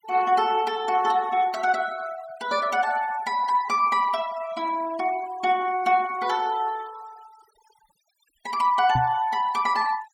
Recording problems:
denoising artefacts; signal-to-artefact ratio 20 dB
microphone thump; at 9 s; peak 0 dB vs average level

